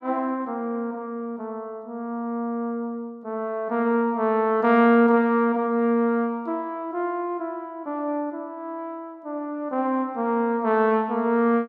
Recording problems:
none

